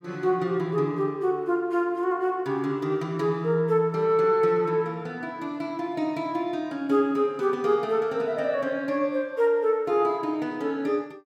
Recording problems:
none

